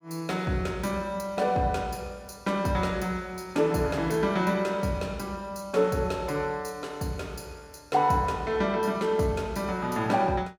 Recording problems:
none

